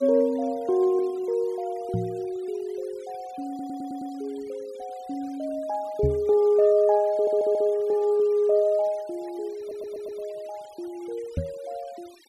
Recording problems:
noise reduction artefacts; signal-to-artefact ratio 27 dB
microphone thump; at 2 s, at 6 s and at 11 s; peak +3 dB vs average level
audio stuttering; at 3.5 s, at 7 s and at 9.5 s

